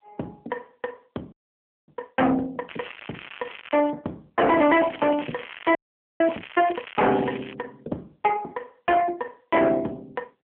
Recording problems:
phone line; 190 Hz to 3.4 kHz, AMR-NB
distorted audio; hard clipping, signal-to-distortion ratio 6 dB
frozen audio; at 1.5 s for 0.5 s and at 6 s
crackling; from 2.5 to 4 s and from 4.5 to 7.5 s; loose cable, SNR 16 dB

